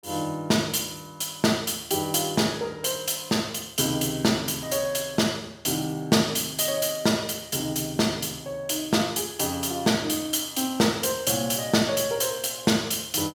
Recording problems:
none

